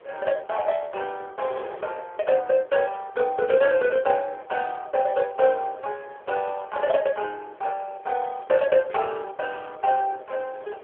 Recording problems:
phone line; 340 Hz to 3.4 kHz, AMR-NB
wind on the microphone; below 930 Hz, SNR 21 dB

